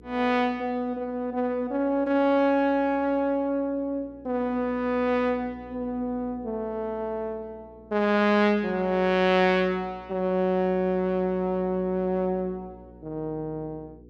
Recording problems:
hum; 60 Hz, harmonics up to 480 Hz, SNR 24 dB

